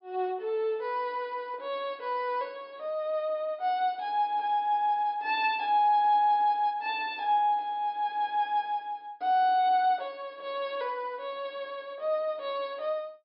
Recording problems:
treble cut off; nothing above 5.5 kHz

